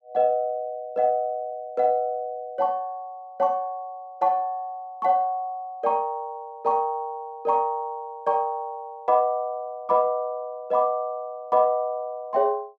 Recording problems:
none

